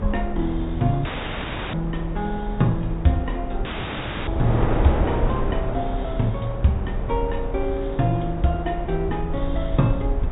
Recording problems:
treble cut off; nothing above 4 kHz
low-frequency rumble; below 54 Hz, strongest tone 40 Hz, SNR 7 dB
wind noise; below 680 Hz, SNR 6 dB
audio cutting out; at 1 s for 0.5 s and at 3.5 s for 0.5 s

